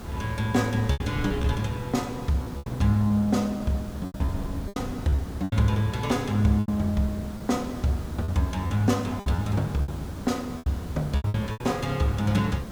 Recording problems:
hiss; slope -6 dB per octave, SNR 12 dB
wind on the microphone; below 140 Hz, SNR 19 dB
packet loss; 10% of the sound replaced, filled with repeated pitch periods

